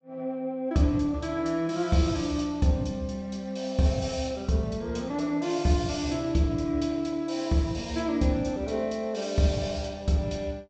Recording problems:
treble missing; nothing above 8 kHz

